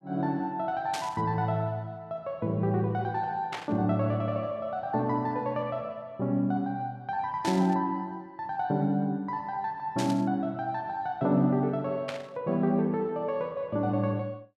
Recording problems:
static burst; 5 times, first at 1 s; peak -2 dB vs average level

